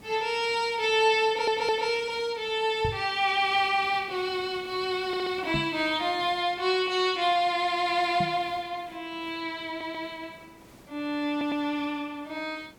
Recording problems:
hiss; slope -5 dB per octave, SNR 25 dB
stutter; 4 times, first at 1.5 s
microphone bump; at 3 s, at 5.5 s and at 8 s; peak -2 dB vs average level

